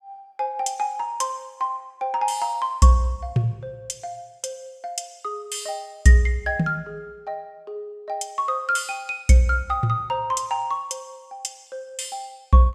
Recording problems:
none

